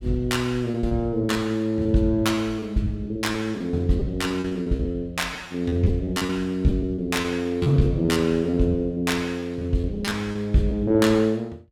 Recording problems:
lost packets; 14% of the sound replaced, filled with repeated pitch periods

